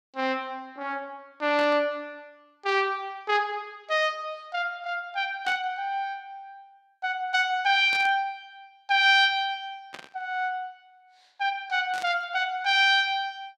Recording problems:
burst of static; 5 times, first at 1.5 s; peak -8 dB vs average level

